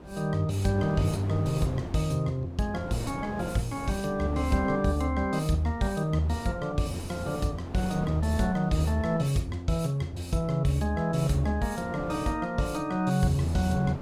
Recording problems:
wind noise; below 530 Hz, SNR 13 dB

